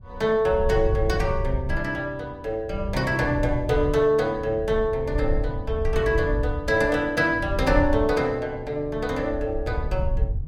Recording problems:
wind on the microphone; below 86 Hz, SNR 6 dB

